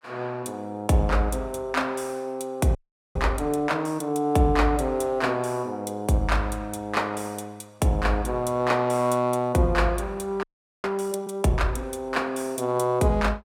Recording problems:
frozen audio; at 3 s and at 10 s

